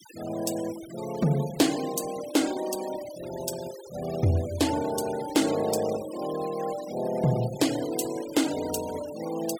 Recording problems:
denoising artefacts; signal-to-artefact ratio 13 dB

